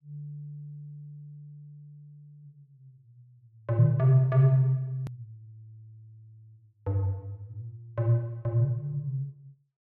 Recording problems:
edit click; at 5 s

